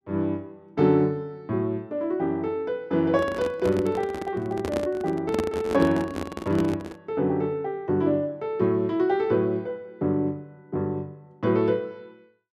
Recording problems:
microphone handling noise; from 3 to 7 s; peak +2 dB vs average level

